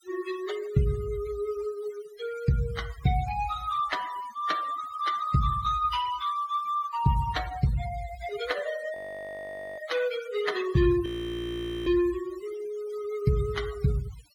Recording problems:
denoising artefacts; signal-to-artefact ratio 14 dB
audio freezing; at 9 s for 1 s and at 11 s for 1 s

